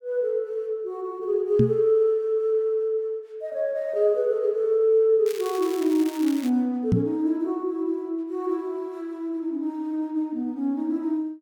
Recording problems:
microphone bump; at 1.5 s and at 7 s; peak +7 dB vs average level
crackling; from 5.5 to 6.5 s; loose cable, SNR 16 dB

